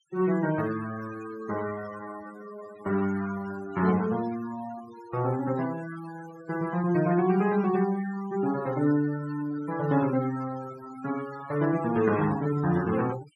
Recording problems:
denoising artefacts; signal-to-artefact ratio 14 dB

